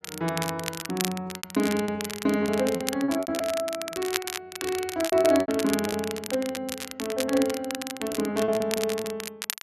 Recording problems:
crackle; vinyl, SNR 7 dB
packet loss; 12% of the sound replaced, filled with repeated pitch periods

